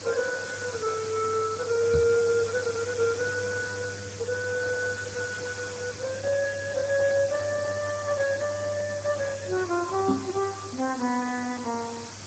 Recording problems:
lossy compression; Speex, log-spectral distance 13 dB
hum; 50 Hz, harmonics up to 500 Hz, SNR 15 dB
hiss; slope -1 dB per octave, SNR 11 dB
knock on the microphone; at 2 s and at 10 s; peak +8 dB vs average level

